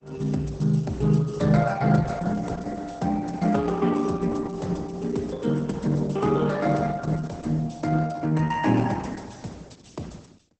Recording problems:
codec artefacts; Opus, then Opus, log-spectral distance 4 dB, nothing above 8.2 kHz

